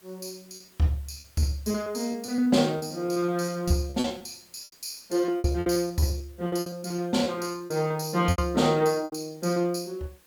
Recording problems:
hiss; slope -2 dB per octave, SNR 29 dB
lost packets; 16% of the sound replaced, filled with repeated pitch periods

